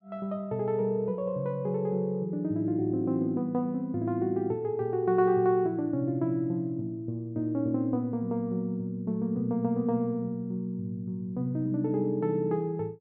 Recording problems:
none

